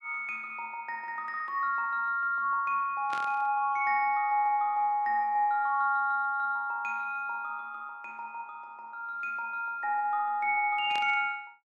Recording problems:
burst of static; at 3 s and at 11 s; peak -8 dB vs average level

